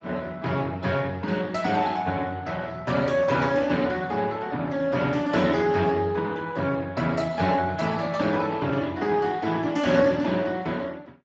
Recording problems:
codec artefacts; Speex, log-spectral distance 4 dB, nothing above 7.3 kHz

